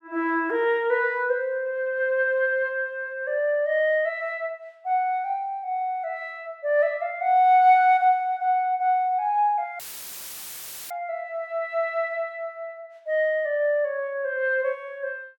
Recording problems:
audio cutting out; at 10 s for 1 s; filled with static

